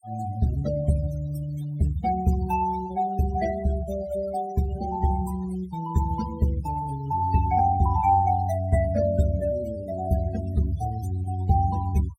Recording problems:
noise reduction artefacts; signal-to-artefact ratio 16 dB

